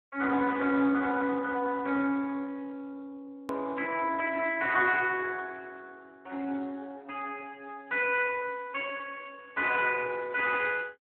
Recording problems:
phone line; 220 Hz to 3.3 kHz, Speex
edit click; at 3.5 s

